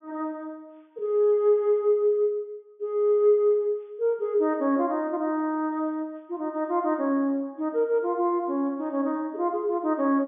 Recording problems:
treble missing; nothing above 3.5 kHz

